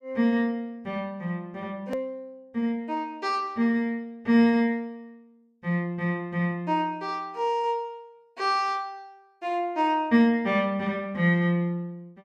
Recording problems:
click at an edit; at 2 s

